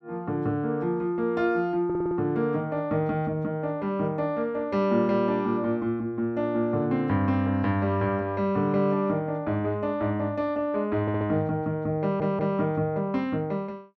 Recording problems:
stutter; at 2 s, at 11 s and at 12 s

